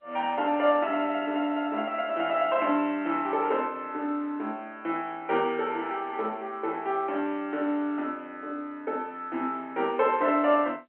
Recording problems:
telephone audio; 220 Hz to 3.2 kHz, G.711

